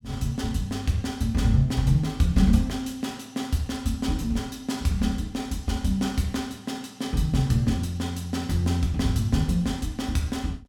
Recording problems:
none

